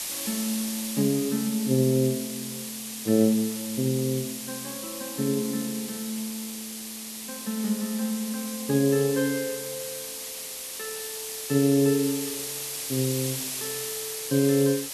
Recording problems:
hiss; SNR 6 dB

